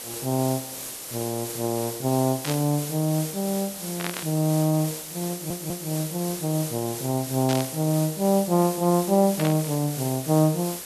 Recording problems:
background hiss; SNR 8 dB
static burst; 4 times, first at 2.5 s; peak -2 dB vs average level
stutter; at 5.5 s

